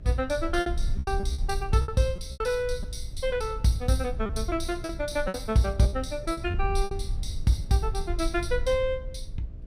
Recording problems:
electrical hum; 60 Hz, harmonics up to 660 Hz, SNR 21 dB
rumble; below 66 Hz, SNR 7 dB
lost packets; 8% of the sound replaced, filled with repeated pitch periods

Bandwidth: 15.5 kHz